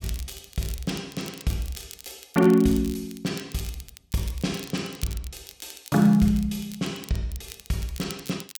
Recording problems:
crackle; vinyl, SNR 17 dB

